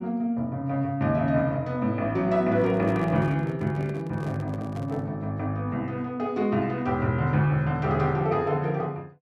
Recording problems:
handling noise; from 2.5 to 5 s; peak -10 dB vs average level

